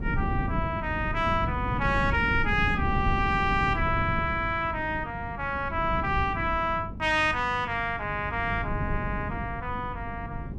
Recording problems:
hum; 50 Hz, harmonics up to 600 Hz, SNR 16 dB
wind on the microphone; below 200 Hz, SNR 6 dB

